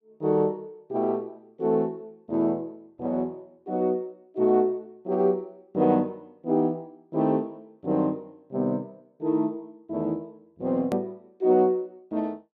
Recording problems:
hard cut with a click; at 11 s

